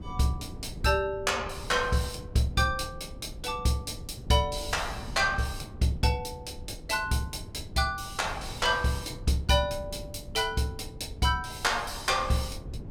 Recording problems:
wind on the microphone; below 160 Hz, SNR 14 dB

